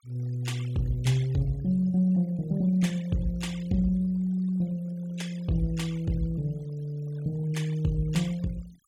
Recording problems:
denoising artefacts; signal-to-artefact ratio 21 dB

